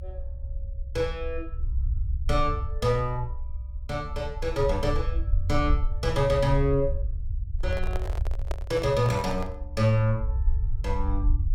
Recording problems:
rumble; below 66 Hz, SNR 4 dB
microphone handling noise; from 7.5 to 9.5 s; peak -4 dB vs average level

